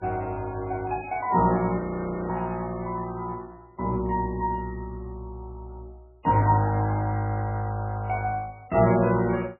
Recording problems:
lossy compression; MP3, log-spectral distance 2 dB, nothing above 2.5 kHz
audio freezing; at 2 s for 0.5 s

